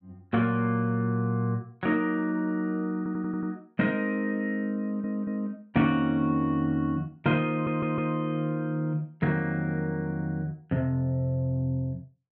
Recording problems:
stutter; at 3 s, at 5 s and at 7.5 s

